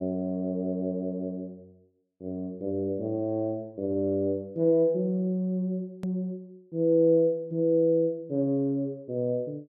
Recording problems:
edit click; at 6 s

